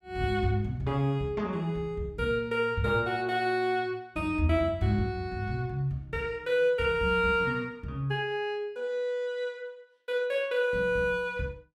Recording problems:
none

